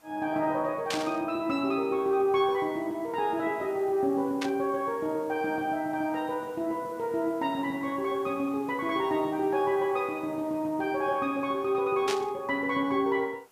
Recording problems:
background hiss; SNR 27 dB
burst of static; at 1 s, at 4.5 s and at 12 s; peak +1 dB vs average level

